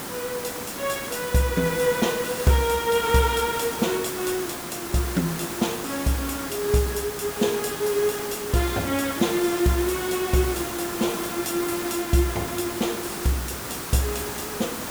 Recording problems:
background hiss; slope -4 dB per octave, SNR 6 dB

